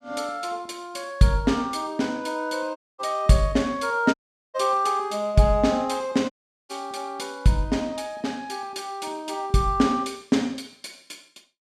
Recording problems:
dropout; at 3 s, at 4 s and at 6.5 s

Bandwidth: 15.5 kHz